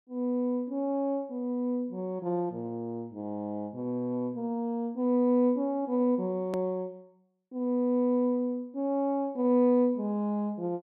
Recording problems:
edit click; at 6.5 s

